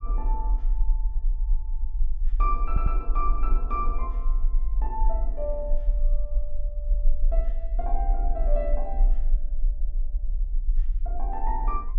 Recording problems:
low-frequency rumble; below 38 Hz, strongest tone 26 Hz, SNR -6 dB
stutter; at 2.5 s

